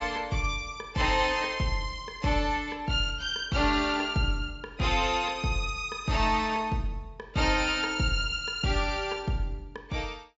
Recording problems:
treble missing; nothing above 8 kHz

